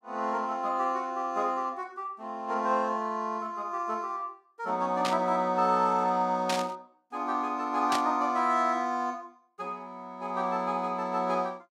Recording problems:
static burst; at 5 s, at 6.5 s and at 8 s; peak +2 dB vs average level

